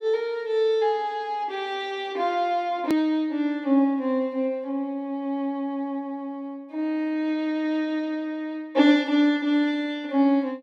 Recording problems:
edit click; at 3 s

